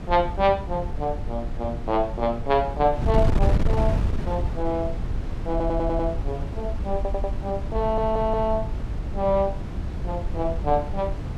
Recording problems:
wind noise; below 120 Hz, SNR 3 dB
stutter; at 5.5 s, at 7 s and at 8 s

